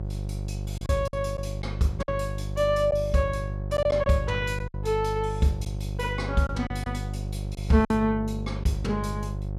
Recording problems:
hum; 50 Hz, harmonics up to 550 Hz, SNR 6 dB
lost packets; 6% of the sound replaced, filled with silence

